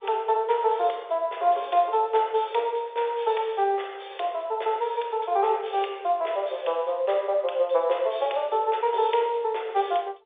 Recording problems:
phone line; 370 Hz to 3.6 kHz, G.711

